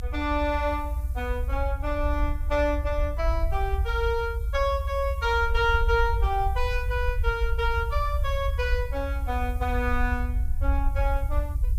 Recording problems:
hiss; SNR 27 dB
low-frequency rumble; below 70 Hz, SNR 1 dB

